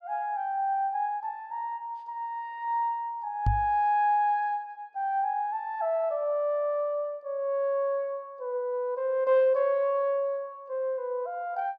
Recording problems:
microphone thump; at 3.5 s; peak +5 dB vs average level

